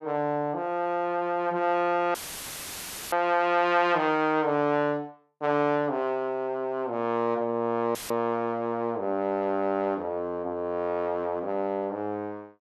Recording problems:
audio cutting out; at 2 s for 1 s and at 8 s; filled with static

